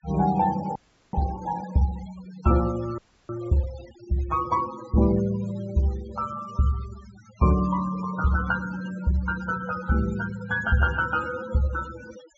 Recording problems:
low-pass filter; nothing above 8 kHz
denoising artefacts; signal-to-artefact ratio 16 dB
audio freezing; at 1 s and at 3 s

